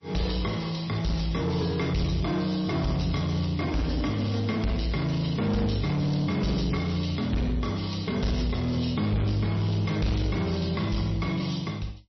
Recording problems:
lossy compression; MP3, log-spectral distance 6 dB, nothing above 5.8 kHz
distorted audio; soft clipping, signal-to-distortion ratio 10 dB

